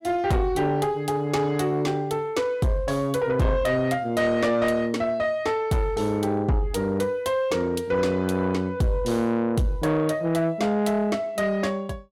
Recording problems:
distorted audio; soft clipping, signal-to-distortion ratio 11 dB

